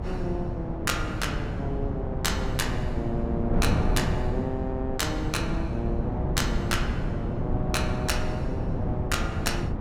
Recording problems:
wind noise; below 220 Hz, SNR -2 dB

